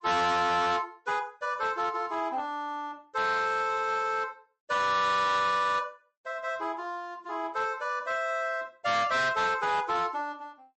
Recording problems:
codec artefacts; MP3, log-spectral distance 2 dB, nothing above 8 kHz
distortion; hard clipping, signal-to-distortion ratio 10 dB

